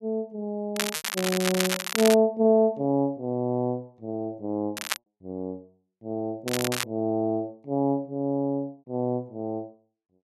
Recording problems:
lost packets; 0.9% of the sound replaced, filled with repeated pitch periods
crackling; from 1 to 2 s, at 5 s and at 6.5 s; loose cable, SNR 3 dB

